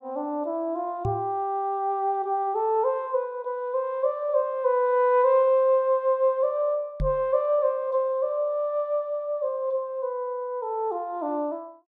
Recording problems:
microphone bump; at 1 s and at 7 s; peak -1 dB vs average level

